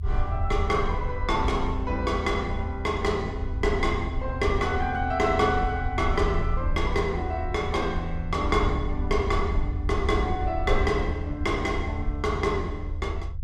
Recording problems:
low-frequency rumble; below 80 Hz, SNR 4 dB

